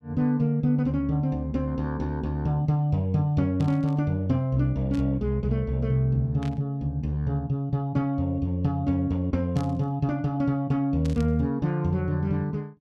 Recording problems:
burst of static; 5 times, first at 3.5 s; peak -13 dB vs average level

